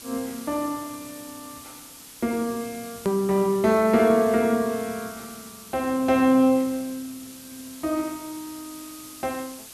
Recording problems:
background hiss; slope 0 dB per octave, SNR 17 dB
hard cut with a click; at 3 s

